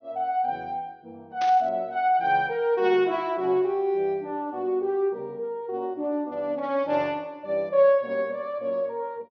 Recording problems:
treble missing; nothing above 6.4 kHz
static burst; at 1.5 s; peak -7 dB vs average level

